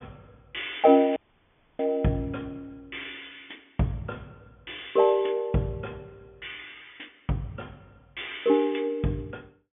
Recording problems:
low-pass filter; nothing above 3.5 kHz
dropout; at 1 s for 0.5 s

